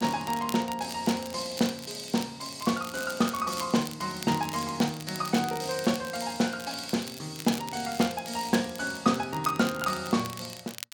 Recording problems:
crackle; vinyl, SNR 13 dB

